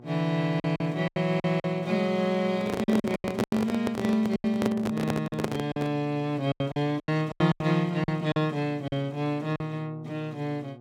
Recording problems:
hum; 60 Hz, harmonics up to 1.2 kHz, SNR 20 dB
lost packets; 11% of the sound replaced, filled with silence
handling noise; from 2.5 to 6 s; peak +3 dB vs average level

